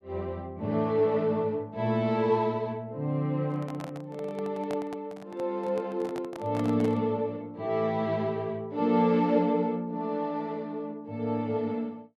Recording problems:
microphone handling noise; from 3.5 to 7 s; peak -7 dB vs average level

